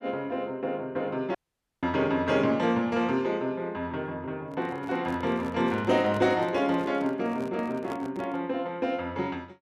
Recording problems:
dropout; at 1.5 s
microphone handling noise; from 4.5 to 8.5 s; peak -7 dB vs average level

